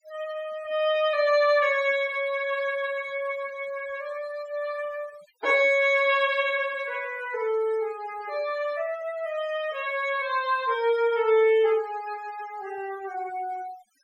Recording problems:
denoising artefacts; signal-to-artefact ratio 21 dB

